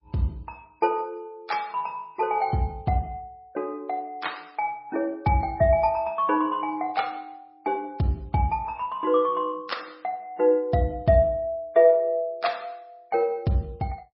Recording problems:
lossy compression; MP3, log-spectral distance 2 dB, nothing above 5.2 kHz

